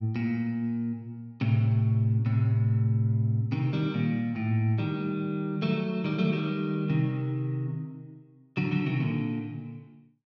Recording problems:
none

